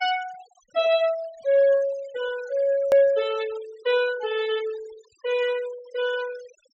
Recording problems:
treble cut off; nothing above 8 kHz
denoising artefacts; signal-to-artefact ratio 19 dB
edit click; at 3 s

